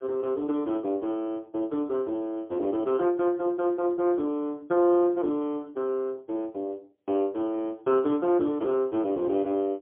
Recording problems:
phone line; 240 Hz to 3.5 kHz, AMR-NB, then MP3

